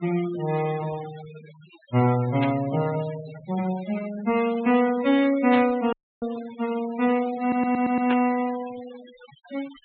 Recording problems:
treble cut off; nothing above 4 kHz
noise reduction artefacts; signal-to-artefact ratio 17 dB
burst of static; at 2.5 s, at 5.5 s and at 8 s; peak -4 dB vs average level
dropout; at 6 s
stutter; at 7.5 s

